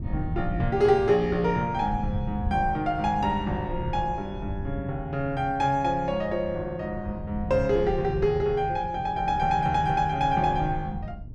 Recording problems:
wind noise; below 140 Hz, SNR 10 dB

